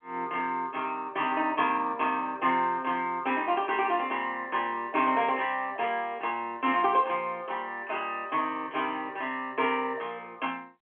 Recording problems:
telephone audio; 240 Hz to 3.2 kHz, G.711

